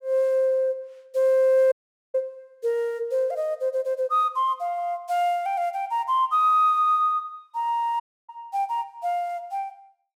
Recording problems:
audio cutting out; at 1.5 s and at 8 s

